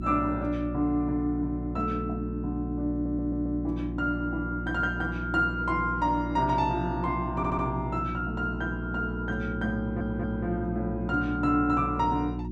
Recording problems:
electrical hum; 60 Hz, harmonics up to 360 Hz, SNR 5 dB
stutter; at 3 s, at 7.5 s and at 10 s

